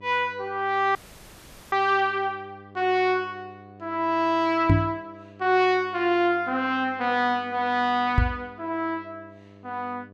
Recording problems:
electrical hum; 50 Hz, harmonics up to 1.2 kHz, SNR 24 dB
audio cutting out; at 1 s for 1 s
knock on the microphone; at 4.5 s and at 8 s; peak +8 dB vs average level

